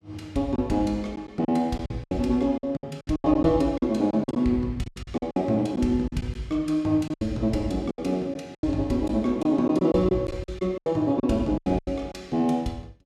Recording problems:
packet loss; 13% of the sound replaced, filled with silence

